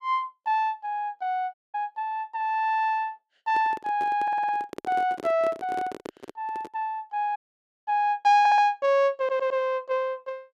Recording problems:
dropout; at 1.5 s and at 7.5 s for 0.5 s
handling noise; from 3.5 to 7 s; peak -7 dB vs average level
stutter; at 4 s, at 8.5 s and at 9 s

